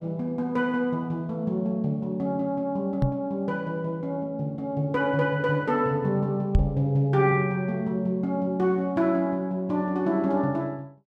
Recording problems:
microphone bump; at 3 s and at 6.5 s; peak +8 dB vs average level

